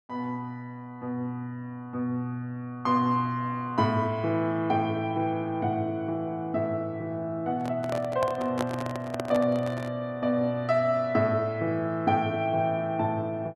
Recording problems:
microphone handling noise; from 7.5 to 10 s; peak +2 dB vs average level

